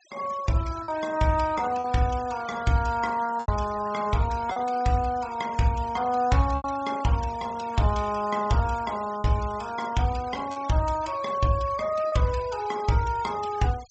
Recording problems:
low-pass filter; nothing above 8 kHz
noise reduction artefacts; signal-to-artefact ratio 19 dB
lost packets; 3% of the sound replaced, filled with repeated pitch periods

